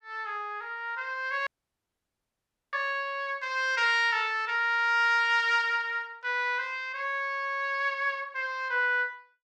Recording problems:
audio cutting out; at 1.5 s for 1.5 s

